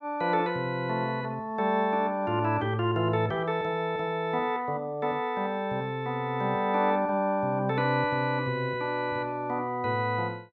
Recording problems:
none

